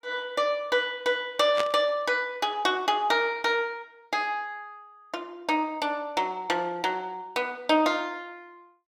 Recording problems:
burst of static; at 1.5 s; peak 0 dB vs average level

